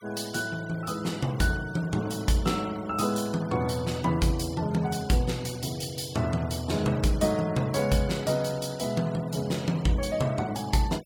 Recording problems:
noise reduction artefacts; signal-to-artefact ratio 20 dB

